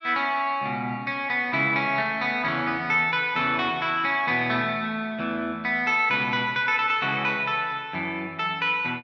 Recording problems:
none

